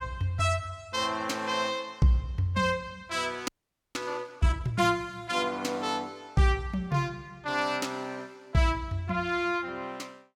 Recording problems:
frozen audio; at 3.5 s

